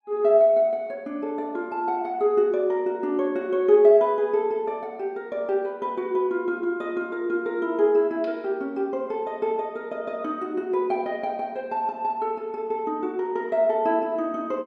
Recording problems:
none

